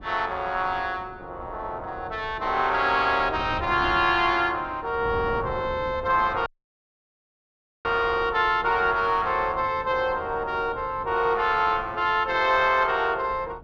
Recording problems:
wind on the microphone; below 400 Hz, SNR 18 dB
audio cutting out; at 6.5 s for 1.5 s

